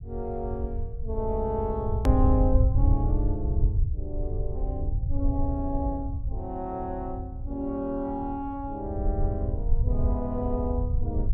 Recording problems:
rumble; below 84 Hz, SNR -3 dB
edit click; at 2 s

